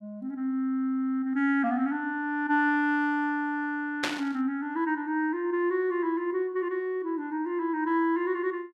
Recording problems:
burst of static; at 4 s; peak +4 dB vs average level

